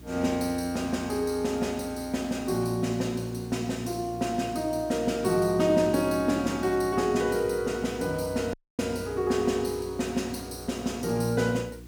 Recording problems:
hum; 60 Hz, harmonics up to 360 Hz, SNR 18 dB
background hiss; slope -1 dB per octave, SNR 28 dB
audio cutting out; at 8.5 s

